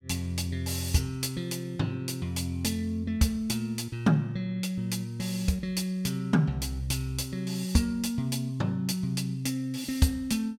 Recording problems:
none

